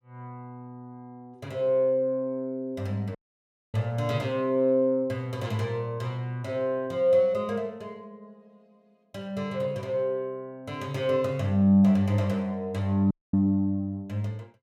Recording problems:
dropout; at 3 s for 0.5 s and at 13 s

